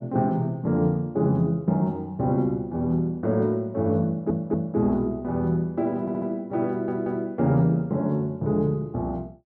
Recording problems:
audio stuttering; at 4 s, at 6 s and at 6.5 s

